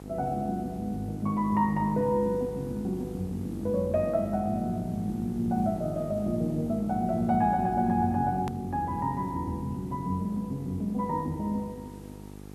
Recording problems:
hum; 50 Hz, harmonics up to 900 Hz, SNR 13 dB
hiss; slope -2 dB per octave, SNR 28 dB
edit click; at 8.5 s

